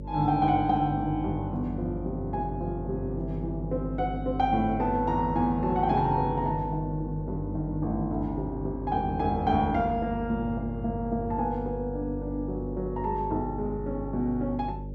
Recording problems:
hum; 50 Hz, harmonics up to 600 Hz, SNR 8 dB

